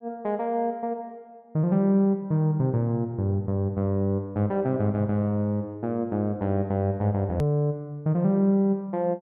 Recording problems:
click at an edit; at 7.5 s

